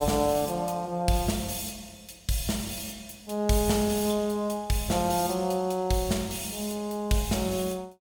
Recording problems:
none

